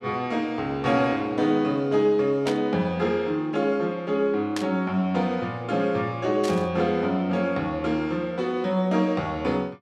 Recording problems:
burst of static; at 2.5 s, at 4.5 s and at 6.5 s; peak -3 dB vs average level

